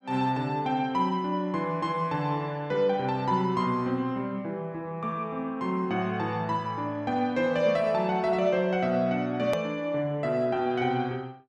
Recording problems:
hard cut with a click; at 9.5 s

